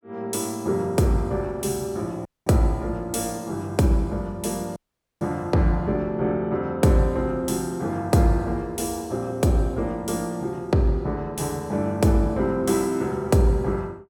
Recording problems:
dropout; at 2.5 s and at 5 s

